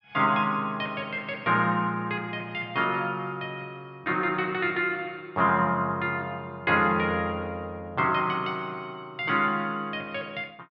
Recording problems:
none

